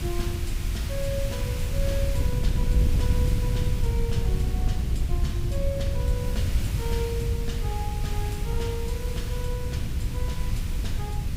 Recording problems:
hiss; SNR 4 dB
wind noise; below 100 Hz, SNR -9 dB

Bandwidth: 15.5 kHz